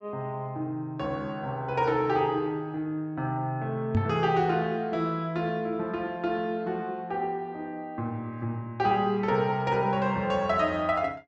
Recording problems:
treble missing; nothing above 7.8 kHz
knock on the microphone; at 4 s; peak +6 dB vs average level

